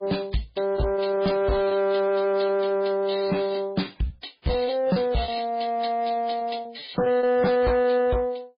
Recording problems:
lossy compression; MP3, then MP3, log-spectral distance 4 dB, nothing above 4.8 kHz
distortion; soft clipping, signal-to-distortion ratio 11 dB
lost packets; 13% of the sound replaced, filled with repeated pitch periods

